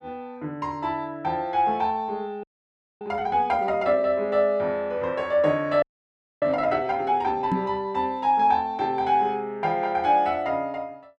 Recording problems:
audio freezing; at 2.5 s for 0.5 s and at 6 s for 0.5 s
microphone bump; at 7.5 s; peak +2 dB vs average level

